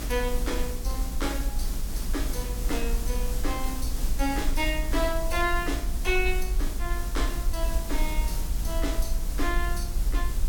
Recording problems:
hum; 60 Hz, harmonics up to 480 Hz, SNR 15 dB
hiss; SNR 6 dB
low-frequency rumble; below 50 Hz, SNR 0 dB

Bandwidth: 17.5 kHz